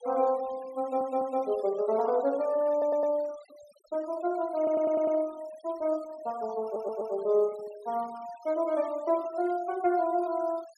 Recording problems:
denoising artefacts; signal-to-artefact ratio 23 dB
stutter; 4 times, first at 1 s

